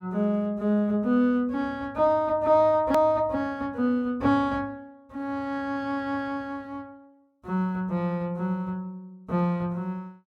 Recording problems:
edit click; at 3 s

